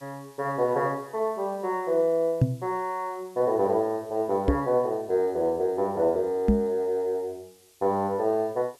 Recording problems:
hiss; SNR 29 dB
microphone bump; at 2.5 s, at 4.5 s and at 6.5 s; peak +9 dB vs average level

